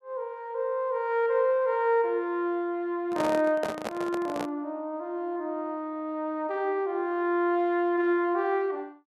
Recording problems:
handling noise; from 3 to 4.5 s; peak 0 dB vs average level

